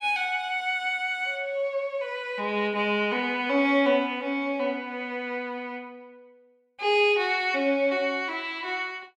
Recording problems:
none

